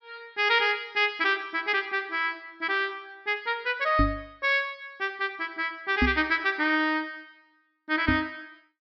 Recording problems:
treble missing; nothing above 5.5 kHz
knock on the microphone; at 4 s, at 6 s and at 8 s; peak +5 dB vs average level

